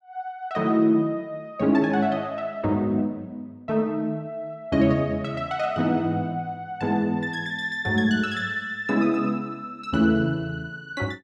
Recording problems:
none

